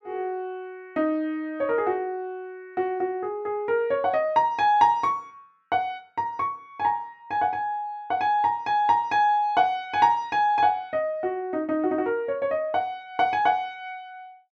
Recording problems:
none

